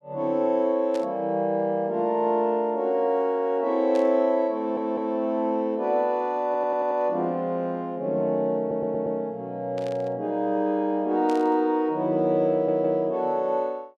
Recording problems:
static burst; 4 times, first at 1 s; peak -13 dB vs average level
stutter; 4 times, first at 4.5 s

